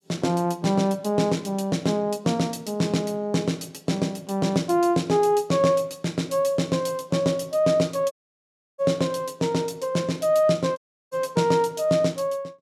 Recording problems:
audio cutting out; at 8 s for 0.5 s and at 11 s

